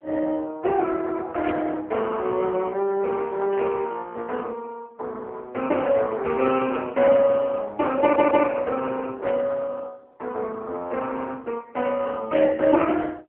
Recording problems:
phone line; 260 Hz to 3.1 kHz, AMR-NB
burst of static; 5 times, first at 1.5 s; peak -6 dB vs average level
audio stuttering; at 8 s

